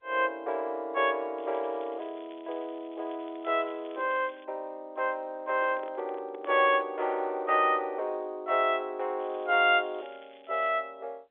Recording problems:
telephone audio; 320 Hz to 3.6 kHz, G.711
crackle; from 1.5 to 4.5 s and from 9 to 11 s; loose cable, SNR 27 dB
microphone handling noise; from 5.5 to 7 s; peak -10 dB vs average level

